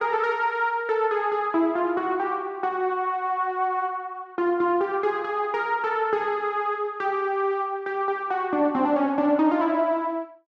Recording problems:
none

